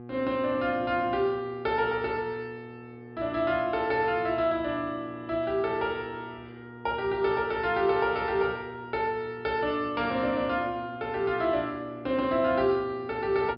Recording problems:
low-pass filter; nothing above 5.5 kHz
hum; 60 Hz, harmonics up to 1.2 kHz, SNR 16 dB

